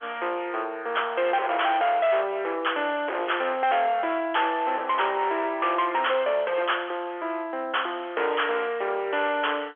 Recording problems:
telephone audio; 300 Hz to 3.4 kHz, G.711
distorted audio; hard clipping, uneven, signal-to-distortion ratio 8 dB

